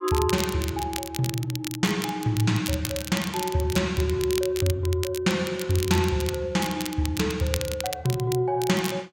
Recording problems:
crackling; vinyl, SNR 9 dB

